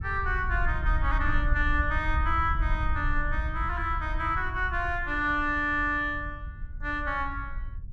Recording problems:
wind noise; below 68 Hz, SNR 4 dB

